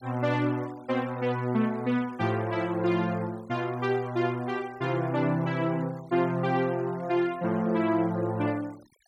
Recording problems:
denoising artefacts; signal-to-artefact ratio 25 dB

